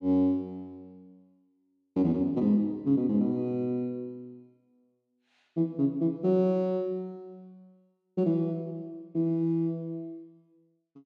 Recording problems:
none

